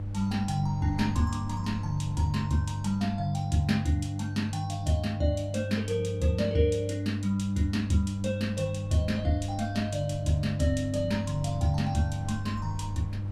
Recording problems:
electrical hum; 50 Hz, harmonics up to 500 Hz, SNR 5 dB
wind noise; below 96 Hz, SNR 17 dB

